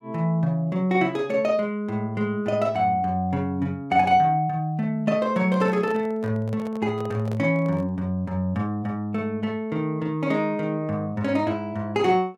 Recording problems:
handling noise; from 5.5 to 8 s; peak -9 dB vs average level

